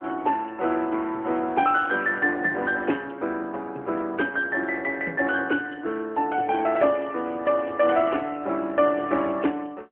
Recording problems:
telephone audio; 220 Hz to 3.2 kHz, AMR-NB

